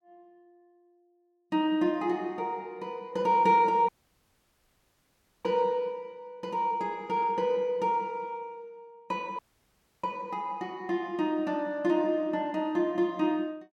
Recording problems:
audio cutting out; at 4 s for 1.5 s and at 9.5 s for 0.5 s

